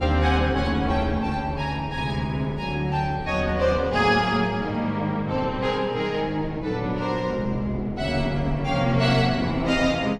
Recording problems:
wind on the microphone; below 330 Hz, SNR 13 dB

